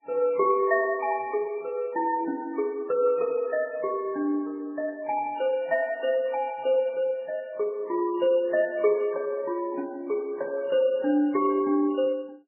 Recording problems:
codec artefacts; MP3, then Vorbis, log-spectral distance 2 dB, nothing above 2.4 kHz

